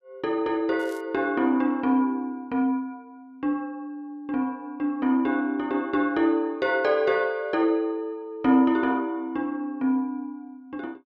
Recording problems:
crackling; at 1 s; loose cable, SNR 28 dB

